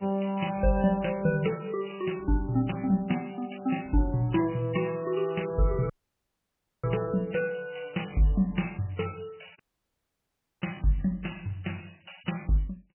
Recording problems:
lossy codec; MP3, log-spectral distance 8 dB, nothing above 3 kHz
dropout; at 6 s for 1 s and at 9.5 s for 1 s

